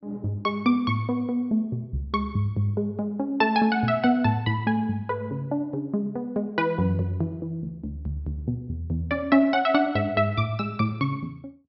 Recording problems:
treble missing; nothing above 5.5 kHz

